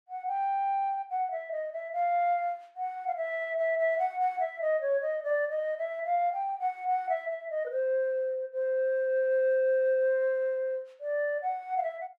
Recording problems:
none

